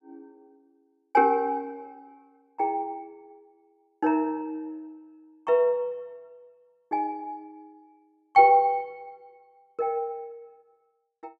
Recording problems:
none

